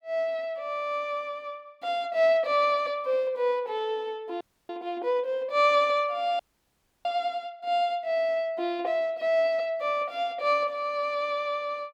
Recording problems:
audio freezing; at 4.5 s and at 6.5 s for 0.5 s

